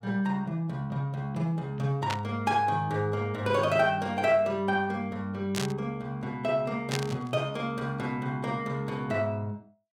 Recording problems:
static burst; at 2 s, at 5.5 s and at 7 s; peak +2 dB vs average level

